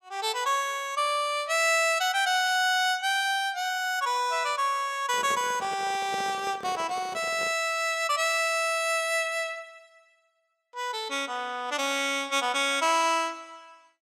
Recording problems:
handling noise; from 5 to 7.5 s; peak -9 dB vs average level

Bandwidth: 16 kHz